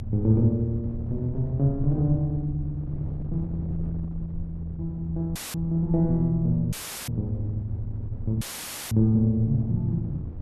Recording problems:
low-frequency rumble; below 82 Hz, strongest tone 80 Hz, SNR 13 dB
wind on the microphone; below 180 Hz, SNR 13 dB
dropout; at 5.5 s, at 6.5 s and at 8.5 s for 0.5 s

